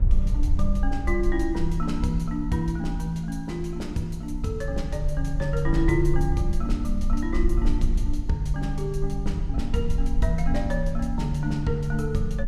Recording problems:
rumble; below 54 Hz, SNR 2 dB

